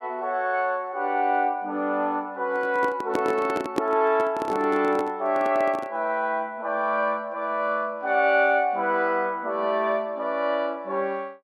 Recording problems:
microphone handling noise; from 2.5 to 6 s; peak +3 dB vs average level

